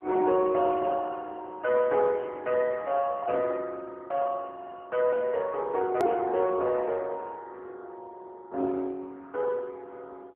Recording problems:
phone line; 240 Hz to 3 kHz, AMR-NB
hard cut with a click; at 6 s

